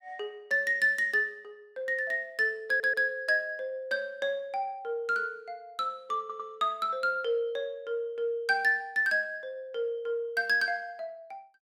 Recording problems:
audio stuttering; at 2.5 s and at 6 s

